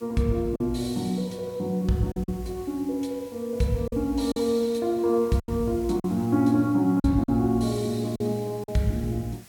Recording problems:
background hiss; slope -1 dB per octave, SNR 24 dB
packet loss; 5% of the sound replaced, filled with silence

